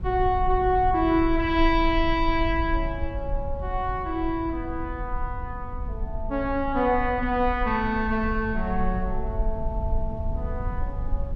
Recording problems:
rumble; below 60 Hz, SNR 7 dB

